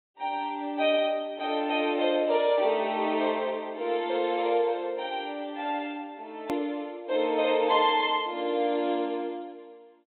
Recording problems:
low-pass filter; nothing above 4 kHz
hard cut with a click; at 6.5 s

